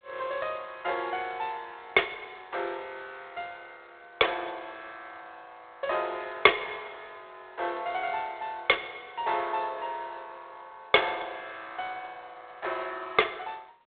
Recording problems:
telephone audio; 320 Hz to 3.6 kHz, G.726

